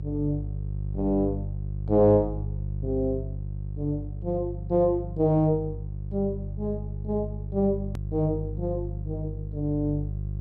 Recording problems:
hum; 50 Hz, harmonics up to 400 Hz, SNR 6 dB
hard cut with a click; at 8 s

